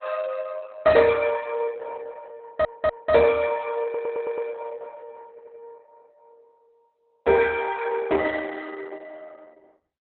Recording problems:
codec artefacts; Opus, log-spectral distance 4 dB, nothing above 4 kHz
stutter; at 2.5 s, at 4 s and at 5.5 s

